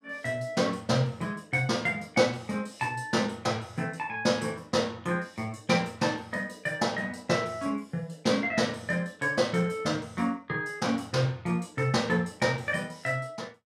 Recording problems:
none

